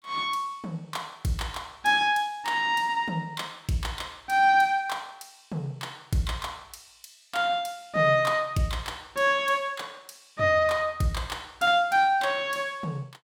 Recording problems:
none

